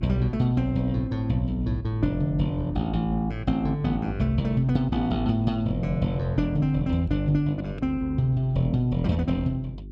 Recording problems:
electrical hum; 50 Hz, harmonics up to 400 Hz, SNR 14 dB

